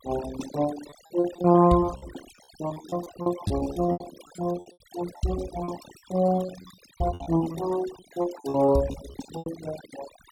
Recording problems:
noise reduction artefacts; signal-to-artefact ratio 15 dB
lost packets; 15% of the sound replaced, filled with repeated pitch periods

